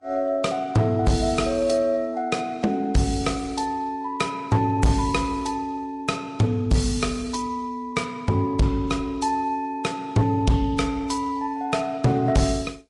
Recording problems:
codec artefacts; Vorbis, then MP3, log-spectral distance 2 dB, nothing above 11 kHz
distortion; hard clipping, signal-to-distortion ratio 10 dB

